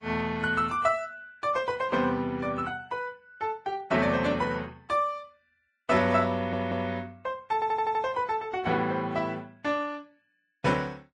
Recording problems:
lossy codec; AAC, then Vorbis, log-spectral distance 2 dB, nothing above 10.4 kHz
stutter; at 6.5 s and at 7.5 s

